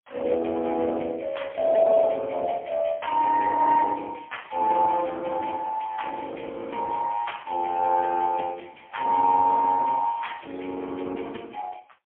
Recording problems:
phone line; 240 Hz to 3.4 kHz, AMR-NB, then MP3

